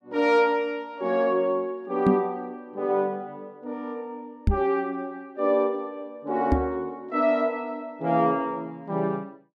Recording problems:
knock on the microphone; at 2 s, at 4.5 s and at 6.5 s; peak +8 dB vs average level

